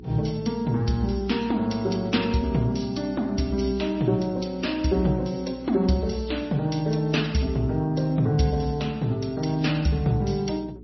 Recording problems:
lossy codec; MP3, then MP3, log-spectral distance 4 dB, nothing above 5.7 kHz
electrical hum; 60 Hz, harmonics up to 420 Hz, SNR 19 dB

